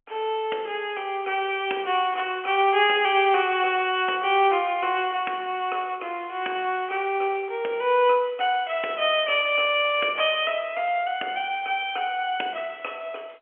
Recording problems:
telephone audio; 320 Hz to 3.2 kHz, G.711

